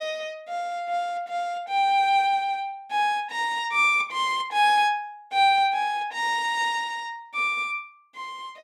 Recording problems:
none

